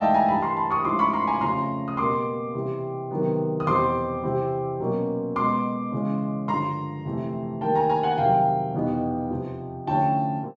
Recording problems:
none

